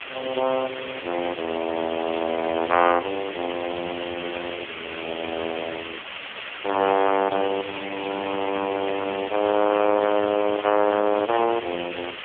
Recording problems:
phone line; 260 Hz to 2.6 kHz, AMR-NB
background hiss; SNR 10 dB

